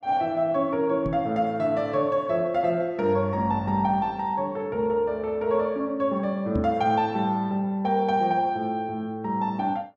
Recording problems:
microphone bump; at 1 s and at 6.5 s; peak 0 dB vs average level

